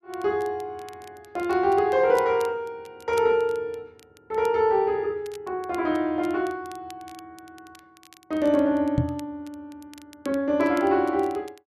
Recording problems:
crackle; vinyl, SNR 26 dB
knock on the microphone; at 9 s; peak +4 dB vs average level

